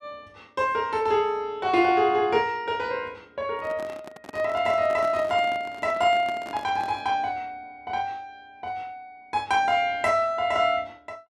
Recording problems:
microphone handling noise; from 3.5 to 7 s; peak -10 dB vs average level

